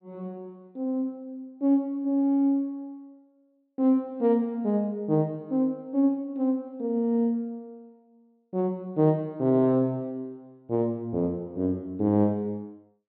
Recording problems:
treble missing; nothing above 4.5 kHz

